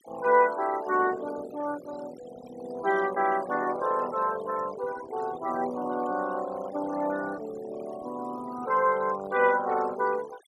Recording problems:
noise reduction artefacts; signal-to-artefact ratio 18 dB

